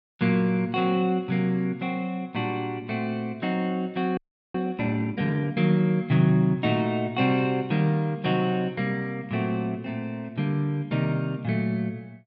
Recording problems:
audio freezing; at 4 s

